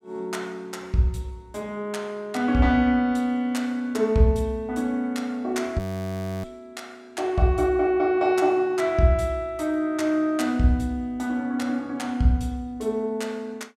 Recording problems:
frozen audio; at 6 s for 0.5 s

